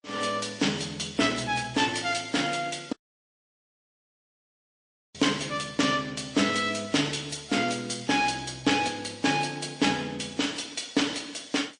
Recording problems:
lossy codec; MP3, then Vorbis, log-spectral distance 5 dB, nothing above 8.7 kHz
dropout; at 3 s for 2 s

